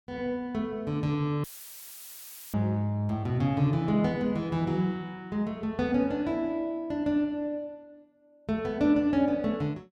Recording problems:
dropout; at 1.5 s for 1 s; filled with static

